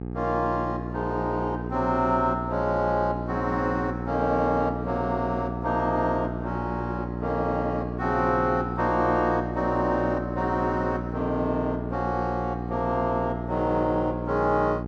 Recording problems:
hum; 60 Hz, harmonics up to 900 Hz, SNR 6 dB

